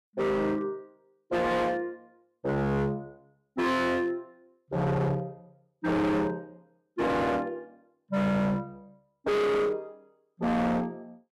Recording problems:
distortion; hard clipping, signal-to-distortion ratio 6 dB

